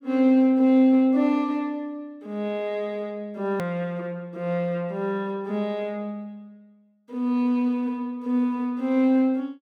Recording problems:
hard cut with a click; at 3.5 s

